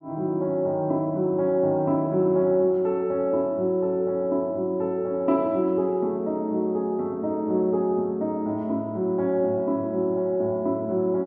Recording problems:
none

